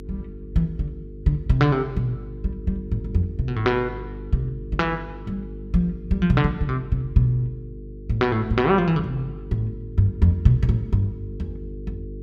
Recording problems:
electrical hum; 50 Hz, harmonics up to 450 Hz, SNR 14 dB

